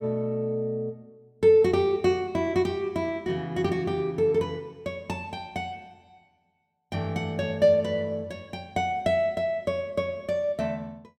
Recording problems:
none

